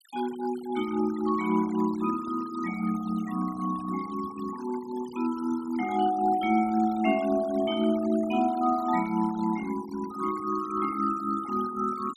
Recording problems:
noise reduction artefacts; signal-to-artefact ratio 17 dB

